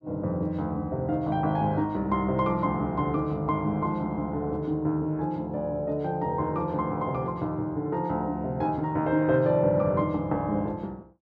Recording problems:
none

